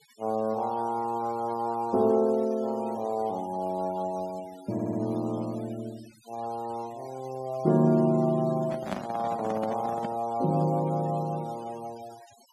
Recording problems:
denoising artefacts; signal-to-artefact ratio 23 dB
stutter; at 4.5 s
handling noise; from 8.5 to 10 s; peak +1 dB vs average level

